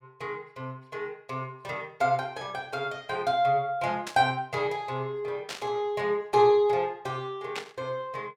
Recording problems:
burst of static; at 4 s, at 5.5 s and at 7.5 s; peak -3 dB vs average level

